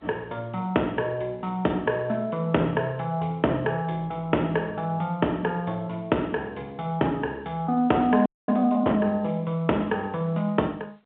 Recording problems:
phone line; 260 Hz to 3.6 kHz, G.711
distortion; hard clipping, signal-to-distortion ratio 17 dB
frozen audio; at 8.5 s

